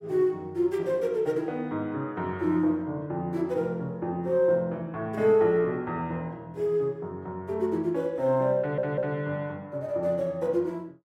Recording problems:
audio stuttering; at 8.5 s

